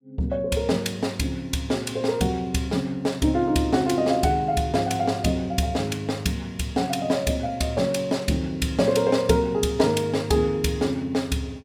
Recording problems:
none

